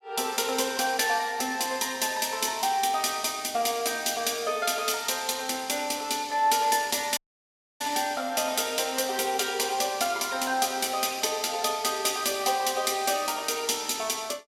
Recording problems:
audio cutting out; at 7 s for 0.5 s

